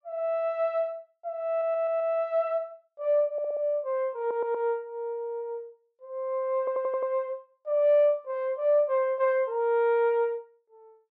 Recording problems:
stutter; 4 times, first at 1.5 s

